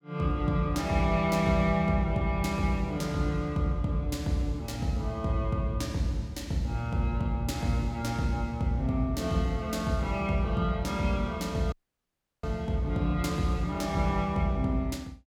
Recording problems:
audio cutting out; at 12 s for 0.5 s

